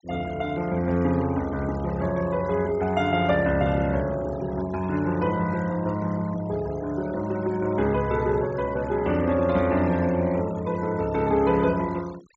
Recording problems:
treble cut off; nothing above 8 kHz
noise reduction artefacts; signal-to-artefact ratio 19 dB

